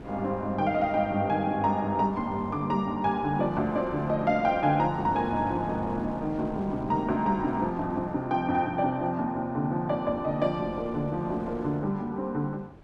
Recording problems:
wind noise; below 460 Hz, SNR 17 dB

